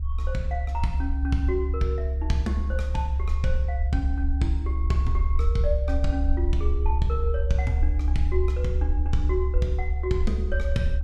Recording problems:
rumble; below 70 Hz, strongest tone 68 Hz, SNR -4 dB

